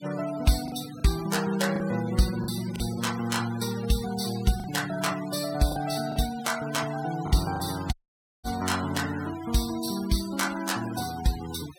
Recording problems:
denoising artefacts; signal-to-artefact ratio 13 dB
lost packets; 4% of the sound replaced, filled with the last packet
audio cutting out; at 8 s for 0.5 s

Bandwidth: 17 kHz